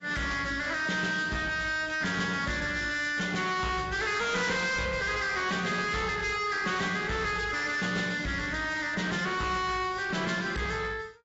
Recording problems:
lossy codec; AAC, log-spectral distance 5 dB, nothing above 7.6 kHz
distortion; soft clipping, signal-to-distortion ratio 7 dB

